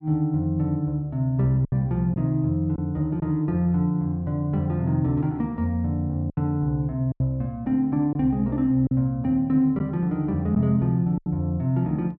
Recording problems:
packet loss; 4% of the sound replaced, filled with silence

